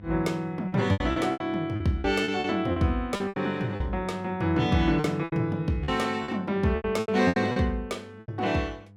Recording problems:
electrical hum; 50 Hz, harmonics up to 700 Hz, SNR 21 dB
packet loss; 13% of the sound replaced, filled with repeated pitch periods

